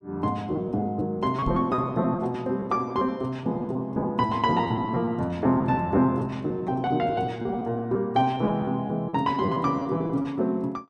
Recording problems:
packet loss; 14% of the sound replaced, filled with repeated pitch periods
microphone thump; at 1.5 s; peak +1 dB vs average level

